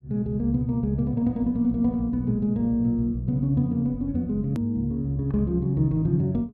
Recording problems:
edit click; at 4.5 s

